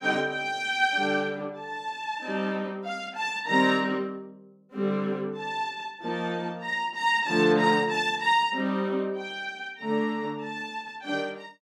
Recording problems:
none

